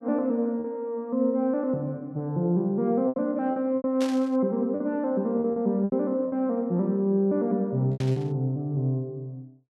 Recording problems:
packet loss; 6% of the sound replaced, filled with repeated pitch periods
static burst; at 4 s and at 8 s; peak -7 dB vs average level

